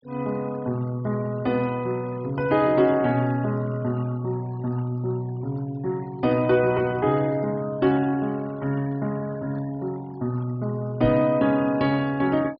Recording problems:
low-pass filter; nothing above 5.5 kHz
noise reduction artefacts; signal-to-artefact ratio 23 dB
microphone thump; at 11 s; peak 0 dB vs average level

